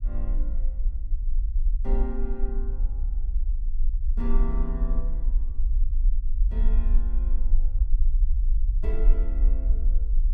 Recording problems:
rumble; below 42 Hz, strongest tone 20 Hz, SNR -12 dB

